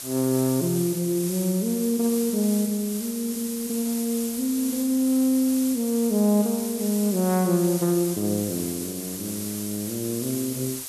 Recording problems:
background hiss; SNR 8 dB

